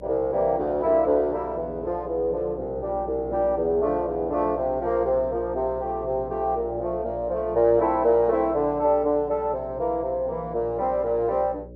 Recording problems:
electrical hum; 60 Hz, harmonics up to 600 Hz, SNR 18 dB

